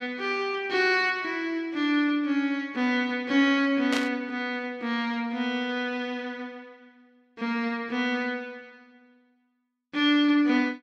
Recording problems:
burst of static; at 4 s; peak -1 dB vs average level

